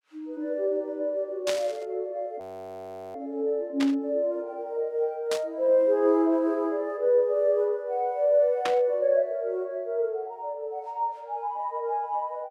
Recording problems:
static burst; 4 times, first at 1.5 s; peak 0 dB vs average level
audio freezing; at 2.5 s for 0.5 s

